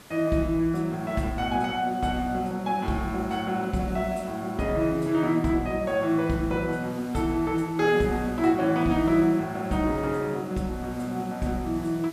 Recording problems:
background hiss; slope -3 dB per octave, SNR 22 dB

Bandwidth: 14.5 kHz